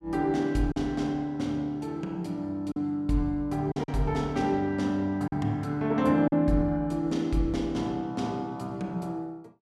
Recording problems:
lost packets; 3% of the sound replaced, filled with silence

